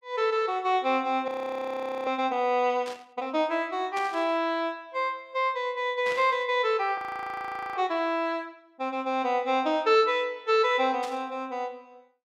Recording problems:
frozen audio; at 1.5 s for 1 s and at 7 s for 1 s
static burst; 4 times, first at 3 s; peak -8 dB vs average level

